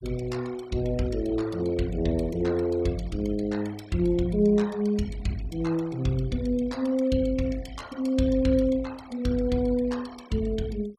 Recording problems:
noise reduction artefacts; signal-to-artefact ratio 21 dB

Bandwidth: 15 kHz